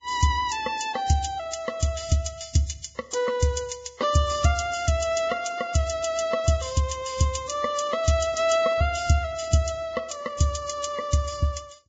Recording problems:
lossy compression; Vorbis, log-spectral distance 5 dB, nothing above 7.3 kHz

